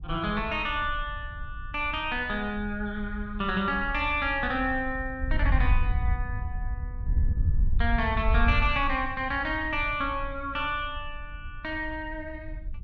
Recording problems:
wind on the microphone; below 76 Hz, SNR 4 dB

